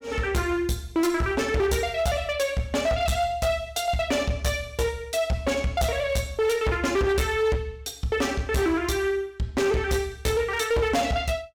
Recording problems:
distorted audio; hard clipping, uneven, signal-to-distortion ratio 10 dB

